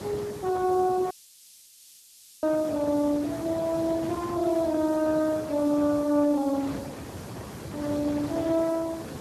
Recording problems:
lossy compression; Speex, log-spectral distance 4 dB
hiss; SNR 22 dB
wind noise; below 890 Hz, SNR 11 dB
dropout; at 1 s for 1.5 s

